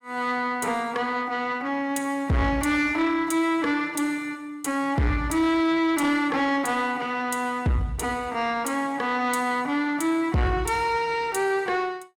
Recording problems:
distorted audio; soft clipping, signal-to-distortion ratio 12 dB

